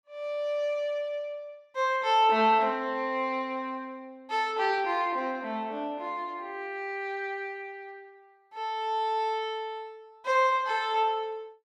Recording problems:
none

